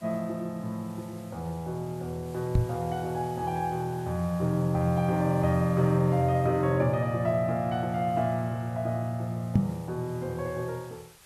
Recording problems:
background hiss; slope -1 dB per octave, SNR 24 dB
knock on the microphone; at 2.5 s and at 9.5 s; peak +8 dB vs average level

